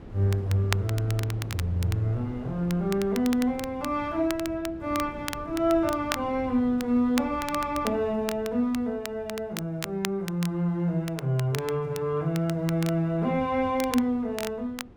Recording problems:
wind on the microphone; below 330 Hz, SNR 18 dB
crackle; vinyl, SNR 12 dB

